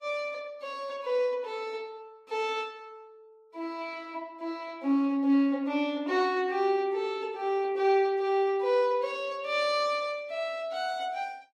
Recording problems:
lossy compression; Vorbis, log-spectral distance 2 dB, nothing above 14.7 kHz

